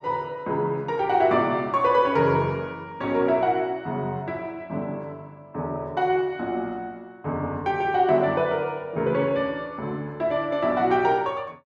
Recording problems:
none

